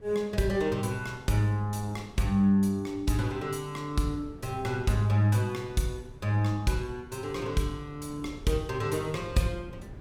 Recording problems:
wind on the microphone; below 210 Hz, SNR 20 dB

